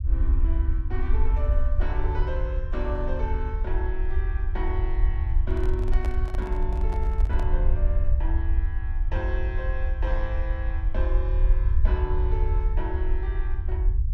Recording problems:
low-frequency rumble; below 62 Hz, SNR -9 dB
microphone handling noise; from 5.5 to 7.5 s; peak +2 dB vs average level

